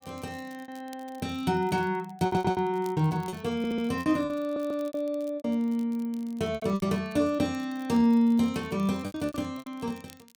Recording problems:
crackling; vinyl, SNR 27 dB
packet loss; 10% of the sound replaced, filled with repeated pitch periods
stutter; at 2 s, at 3.5 s and at 4.5 s

